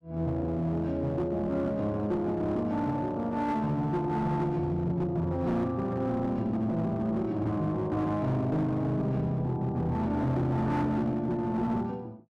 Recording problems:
distorted audio; hard clipping, uneven, signal-to-distortion ratio 10 dB

